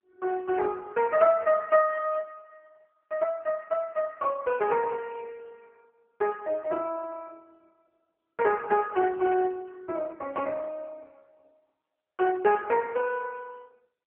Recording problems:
phone line; 300 Hz to 3.1 kHz, AMR-NB

